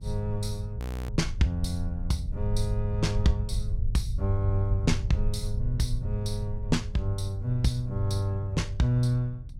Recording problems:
hum; 60 Hz, harmonics up to 600 Hz, SNR 25 dB
low-frequency rumble; below 74 Hz, SNR 6 dB
frozen audio; at 1 s

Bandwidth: 16.5 kHz